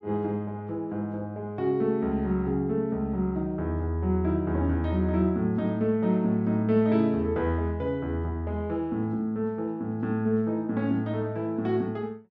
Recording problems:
none

